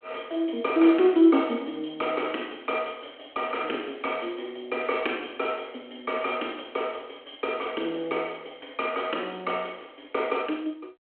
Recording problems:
telephone audio; 240 Hz to 3.3 kHz, G.726

